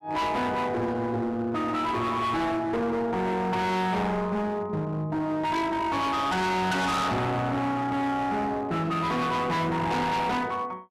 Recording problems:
distortion; hard clipping, signal-to-distortion ratio 6 dB

